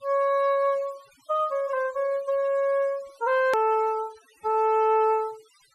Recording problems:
noise reduction artefacts; signal-to-artefact ratio 26 dB
click at an edit; at 3.5 s

